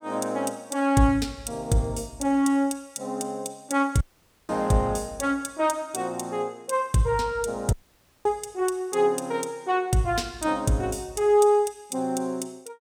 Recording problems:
audio cutting out; at 4 s and at 7.5 s for 0.5 s

